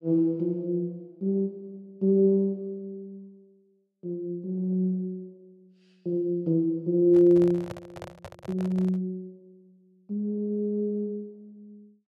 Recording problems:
handling noise; from 7 to 9 s; peak -8 dB vs average level

